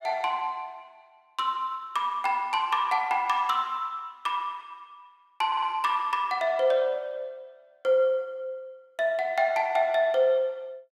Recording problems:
audio stuttering; at 5.5 s

